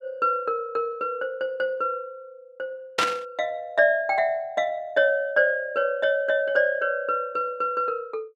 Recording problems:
static burst; at 3 s; peak +4 dB vs average level

